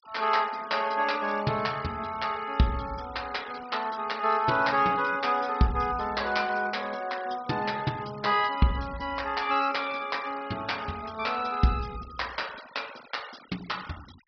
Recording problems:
treble missing; nothing above 5.5 kHz
noise reduction artefacts; signal-to-artefact ratio 19 dB

